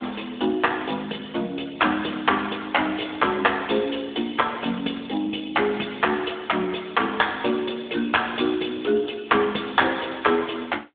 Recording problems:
phone line; 190 Hz to 3.6 kHz, AMR-NB

